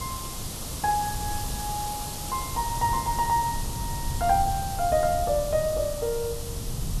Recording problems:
background hiss; SNR 7 dB
rumble; below 130 Hz, SNR 9 dB

